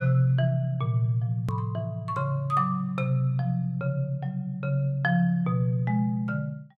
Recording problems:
edit click; at 1.5 s

